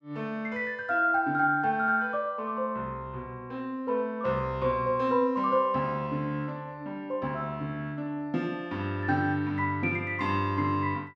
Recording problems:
none

